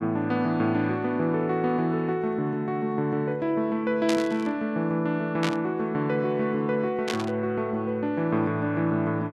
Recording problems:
burst of static; at 4 s, at 5.5 s and at 7 s; peak 0 dB vs average level

